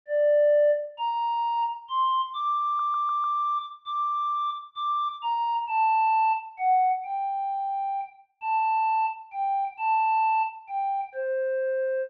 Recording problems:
audio stuttering; at 2.5 s

